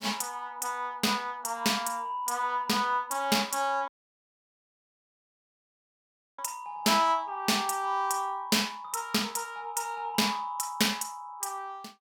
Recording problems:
audio cutting out; at 4 s for 2.5 s

